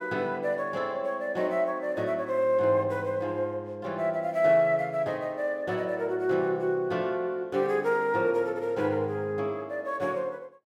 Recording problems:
none

